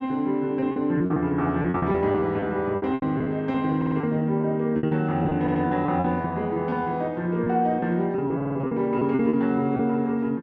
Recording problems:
packet loss; 12% of the sound replaced, filled with repeated pitch periods
audio stuttering; at 4 s, at 5.5 s and at 8.5 s

